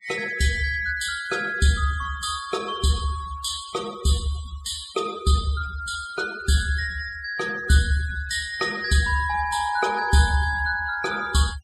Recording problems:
denoising artefacts; signal-to-artefact ratio 15 dB

